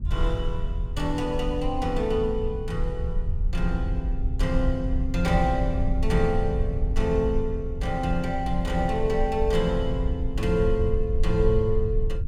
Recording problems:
low-frequency rumble; below 66 Hz, SNR 2 dB

